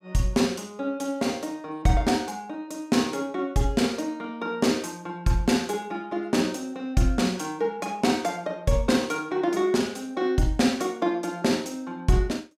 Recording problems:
none

